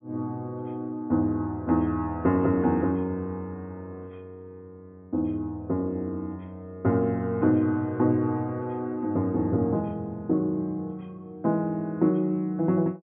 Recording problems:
treble missing; nothing above 3.5 kHz

